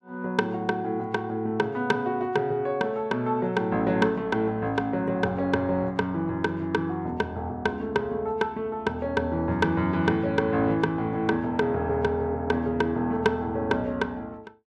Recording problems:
none

